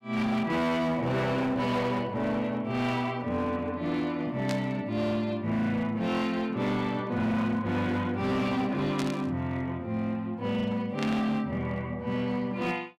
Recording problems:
distortion; hard clipping, signal-to-distortion ratio 11 dB
burst of static; at 4.5 s, at 9 s and at 11 s; peak -3 dB vs average level

